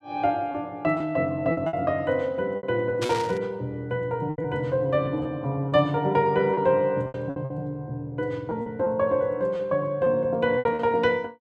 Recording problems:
packet loss; 7% of the sound replaced, filled with repeated pitch periods
static burst; at 3 s; peak -2 dB vs average level

